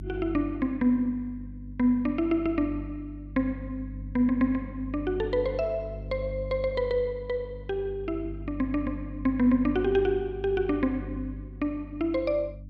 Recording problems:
electrical hum; 50 Hz, harmonics up to 300 Hz, SNR 12 dB

